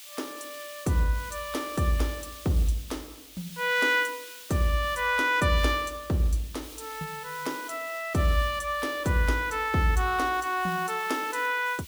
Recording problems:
background hiss; SNR 16 dB

